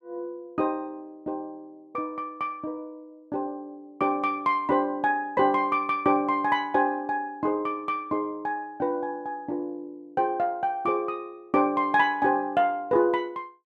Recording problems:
none

